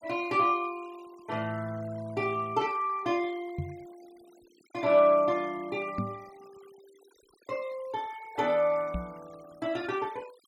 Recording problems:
denoising artefacts; signal-to-artefact ratio 25 dB
knock on the microphone; at 3.5 s, at 6 s and at 9 s; peak +1 dB vs average level

